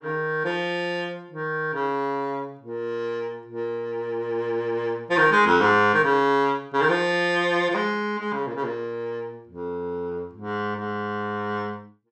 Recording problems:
none

